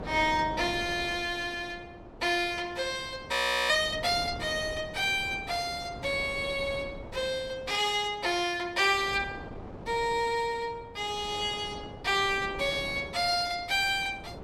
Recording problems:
wind on the microphone; below 630 Hz, SNR 15 dB
audio freezing; at 3.5 s

